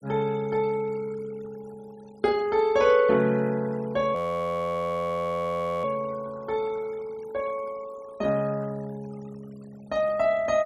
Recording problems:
noise reduction artefacts; signal-to-artefact ratio 23 dB
frozen audio; at 4 s for 1.5 s

